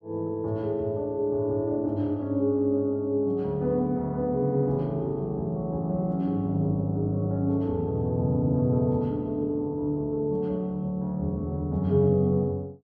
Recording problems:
none

